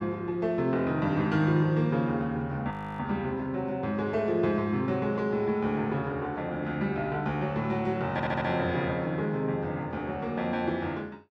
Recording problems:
audio freezing; at 2.5 s
audio stuttering; at 8 s

